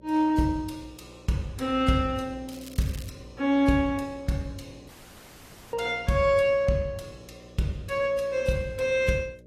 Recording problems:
lossy compression; AAC, log-spectral distance 3 dB, nothing above 14.3 kHz
electrical hum; 60 Hz, harmonics up to 600 Hz, SNR 23 dB
crackle; at 2.5 s; loose cable, SNR 21 dB
audio cutting out; at 5 s for 1 s

